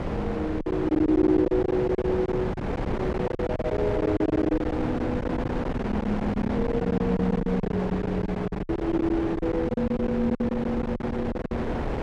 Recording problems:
wind on the microphone; below 660 Hz, SNR 4 dB
lost packets; 16% of the sound replaced, filled with silence

